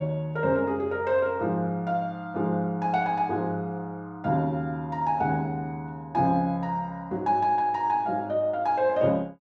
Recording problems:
none

